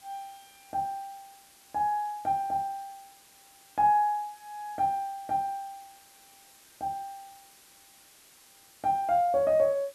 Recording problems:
background hiss; slope 0 dB per octave, SNR 25 dB

